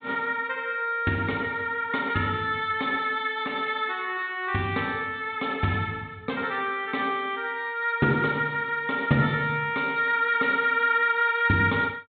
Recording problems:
treble missing; nothing above 4 kHz

